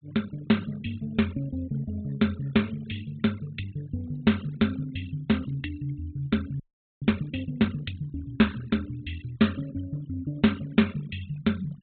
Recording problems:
treble cut off; nothing above 4 kHz
denoising artefacts; signal-to-artefact ratio 20 dB
audio freezing; at 6.5 s

